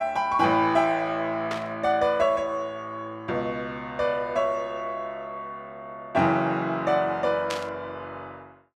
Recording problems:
burst of static; at 1.5 s and at 7.5 s; peak -2 dB vs average level

